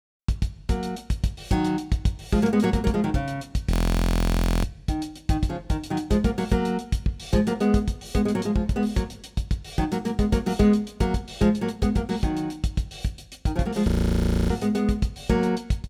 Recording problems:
audio freezing; at 3.5 s for 1 s and at 14 s for 0.5 s

